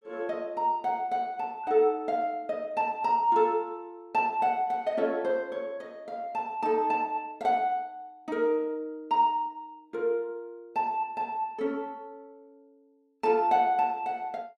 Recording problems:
none

